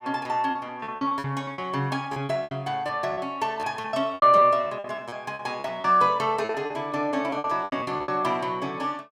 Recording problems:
packet loss; 16% of the sound replaced, filled with repeated pitch periods

